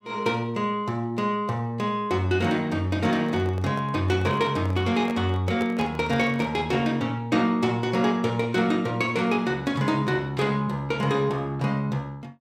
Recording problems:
microphone handling noise; from 3 to 6.5 s; peak -4 dB vs average level

